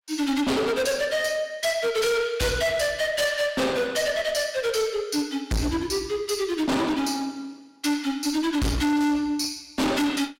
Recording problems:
distortion; hard clipping, uneven, signal-to-distortion ratio 6 dB

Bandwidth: 16 kHz